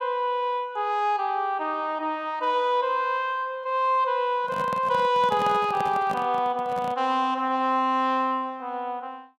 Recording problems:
microphone handling noise; from 4.5 to 7 s; peak -6 dB vs average level

